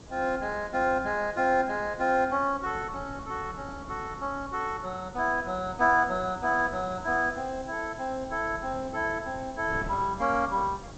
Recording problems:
treble missing; nothing above 8 kHz
background hiss; SNR 26 dB
wind on the microphone; below 410 Hz, SNR 17 dB

